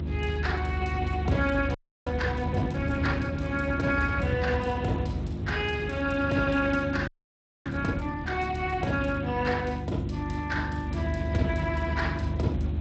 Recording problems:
codec artefacts; Speex, log-spectral distance 3 dB, nothing above 7.8 kHz
electrical hum; 50 Hz, harmonics up to 400 Hz, SNR 6 dB
low-frequency rumble; below 130 Hz, strongest tone 74 Hz, SNR 4 dB
frozen audio; at 2 s and at 7 s for 0.5 s

